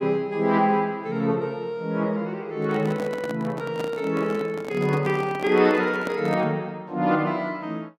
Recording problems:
handling noise; from 2.5 to 6.5 s; peak -3 dB vs average level

